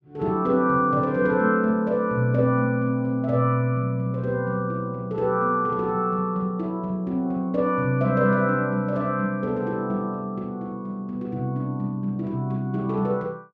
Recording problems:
none

